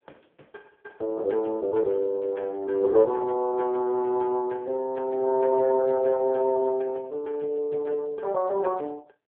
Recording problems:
telephone audio; 260 Hz to 2.5 kHz, AMR-NB

